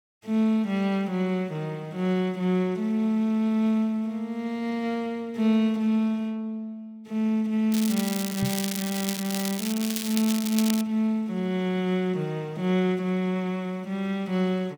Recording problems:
crackle; from 7.5 to 11 s; loose cable, SNR 6 dB
knock on the microphone; at 8.5 s; peak 0 dB vs average level

